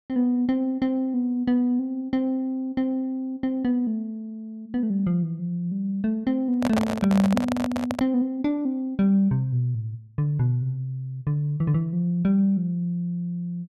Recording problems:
handling noise; from 6.5 to 8 s; peak +3 dB vs average level

